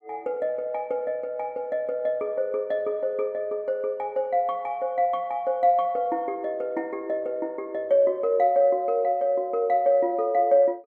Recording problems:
none

